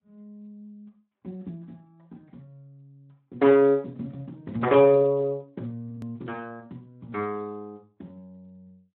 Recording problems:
phone line; 190 Hz to 2.9 kHz, Speex
edit click; at 6 s

